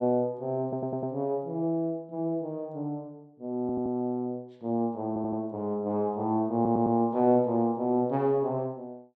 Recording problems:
audio stuttering; 4 times, first at 0.5 s

